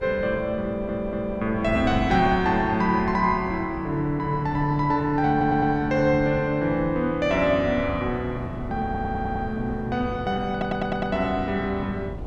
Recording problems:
mains hum; 60 Hz, harmonics up to 600 Hz, SNR 22 dB
wind noise; below 250 Hz, SNR 12 dB
stutter; 4 times, first at 0.5 s

